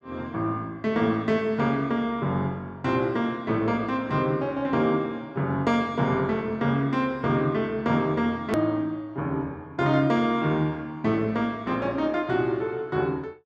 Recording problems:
hard cut with a click; at 8.5 s

